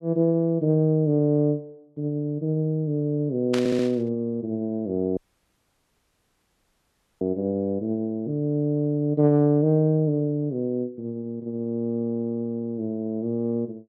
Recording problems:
burst of static; at 3.5 s; peak -3 dB vs average level
audio stuttering; at 3.5 s
dropout; at 5 s for 2 s

